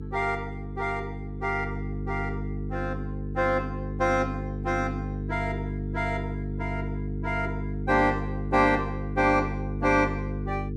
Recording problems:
hum; 50 Hz, harmonics up to 450 Hz, SNR 5 dB

